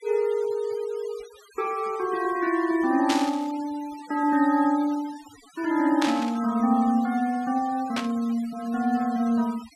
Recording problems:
noise reduction artefacts; signal-to-artefact ratio 21 dB
burst of static; at 3 s, at 6 s and at 8 s; peak 0 dB vs average level

